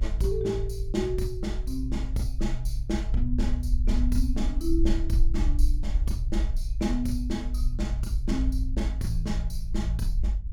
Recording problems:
rumble; below 52 Hz, SNR -1 dB

